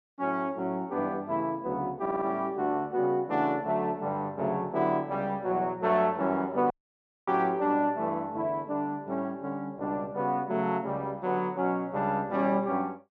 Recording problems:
audio stuttering; at 2 s
dropout; at 6.5 s for 0.5 s

